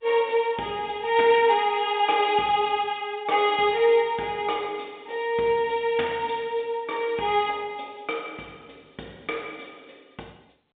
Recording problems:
telephone audio; 280 Hz to 3.6 kHz, G.711

